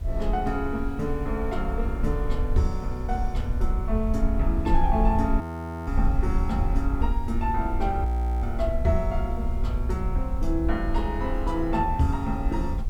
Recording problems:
hiss; slope -6 dB per octave, SNR 23 dB
rumble; below 62 Hz, SNR 1 dB
audio freezing; at 5.5 s and at 8 s

